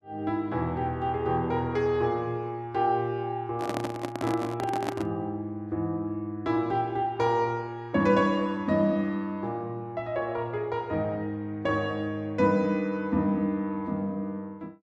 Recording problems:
handling noise; from 3.5 to 5 s; peak +1 dB vs average level

